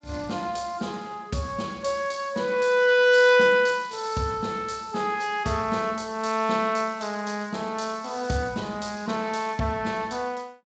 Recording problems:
lossy compression; Speex, log-spectral distance 6 dB, nothing above 7.6 kHz

